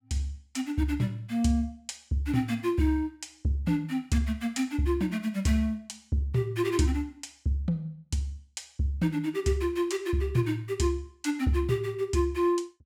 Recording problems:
none

